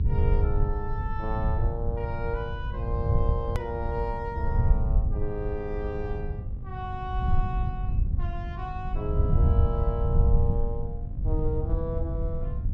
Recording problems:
hum; 50 Hz, harmonics up to 800 Hz, SNR 10 dB
low-frequency rumble; below 92 Hz, SNR -6 dB
click at an edit; at 3.5 s

